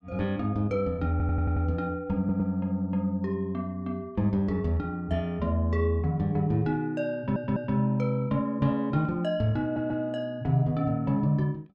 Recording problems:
stutter; 4 times, first at 1 s

